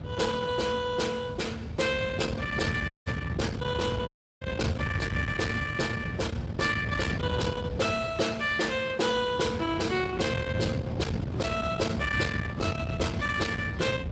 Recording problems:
codec artefacts; Speex, log-spectral distance 4 dB, nothing above 7.8 kHz
distortion; soft clipping, signal-to-distortion ratio 11 dB
rumble; below 450 Hz, SNR 5 dB
audio cutting out; at 3 s and at 4 s

